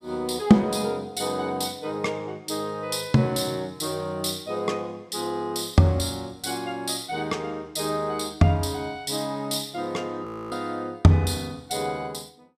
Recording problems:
frozen audio; at 10 s

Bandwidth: 14.5 kHz